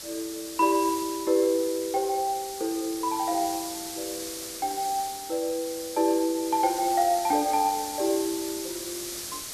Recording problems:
hiss; SNR 8 dB

